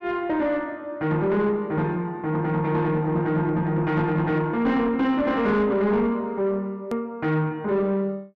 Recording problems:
distortion; soft clipping, signal-to-distortion ratio 11 dB
hard cut with a click; at 7 s

